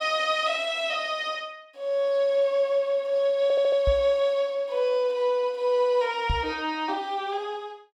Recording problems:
stutter; at 3.5 s
microphone bump; at 4 s and at 6.5 s; peak +1 dB vs average level

